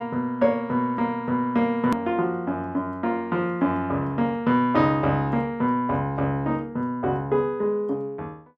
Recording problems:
edit click; at 2 s

